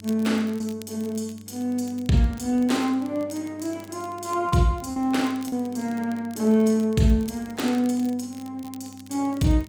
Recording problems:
electrical hum; 50 Hz, harmonics up to 600 Hz, SNR 23 dB
crackle; vinyl, SNR 24 dB
packet loss; 2% of the sound replaced, filled with repeated pitch periods

